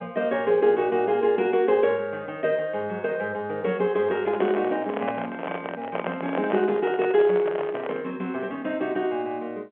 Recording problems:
phone line; 220 Hz to 3.3 kHz, G.711
microphone handling noise; from 4 to 8 s; peak 0 dB vs average level

